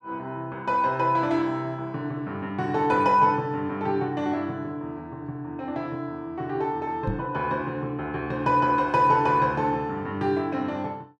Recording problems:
microphone thump; at 7 s; peak 0 dB vs average level

